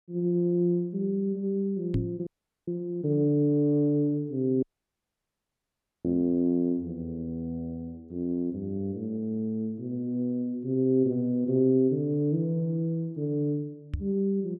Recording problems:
knock on the microphone; at 2 s and at 14 s; peak +3 dB vs average level
dropout; at 2.5 s and at 4.5 s for 1.5 s

